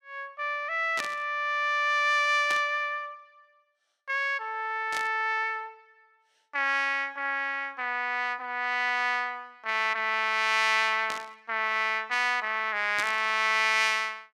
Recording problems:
burst of static; 5 times, first at 1 s; peak -3 dB vs average level

